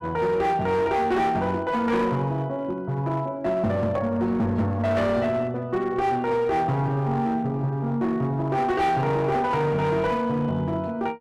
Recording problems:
distorted audio; hard clipping, uneven, signal-to-distortion ratio 11 dB

